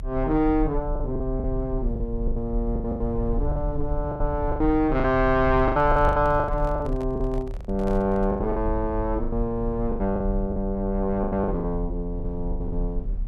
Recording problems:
rumble; below 54 Hz, SNR 7 dB
lost packets; 13% of the sound replaced, filled with the last packet
handling noise; from 5.5 to 8.5 s; peak -10 dB vs average level

